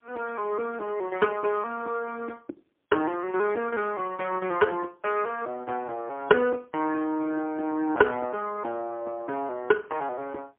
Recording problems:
phone line; 280 Hz to 2.8 kHz, AMR-NB, then MP3

